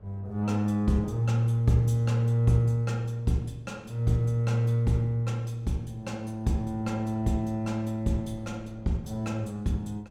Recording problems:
wind on the microphone; below 310 Hz, SNR 26 dB

